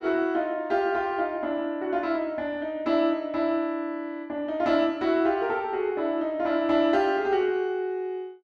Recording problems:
none

